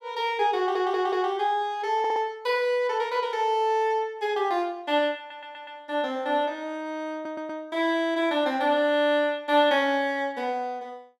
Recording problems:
stutter; 4 times, first at 0.5 s

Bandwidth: 15.5 kHz